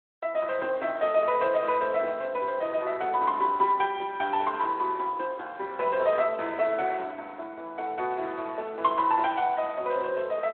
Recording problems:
phone line; 300 Hz to 3.6 kHz, Speex

